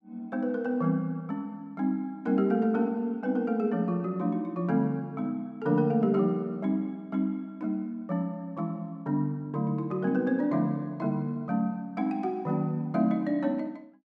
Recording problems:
none

